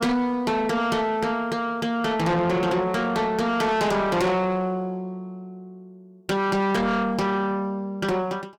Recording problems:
distortion; soft clipping, signal-to-distortion ratio 8 dB

